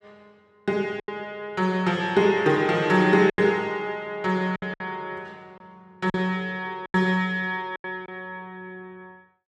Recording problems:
lost packets; 6% of the sound replaced, filled with silence

